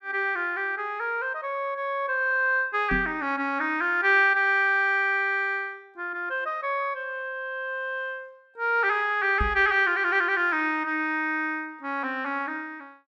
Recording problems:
microphone thump; at 3 s and at 9.5 s; peak -1 dB vs average level

